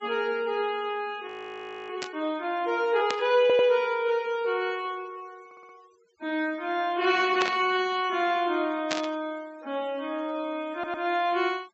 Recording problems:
treble missing; nothing above 7.9 kHz
denoising artefacts; signal-to-artefact ratio 25 dB
frozen audio; at 1.5 s for 0.5 s
static burst; 4 times, first at 2 s; peak +2 dB vs average level
stutter; at 3.5 s, at 5.5 s and at 11 s

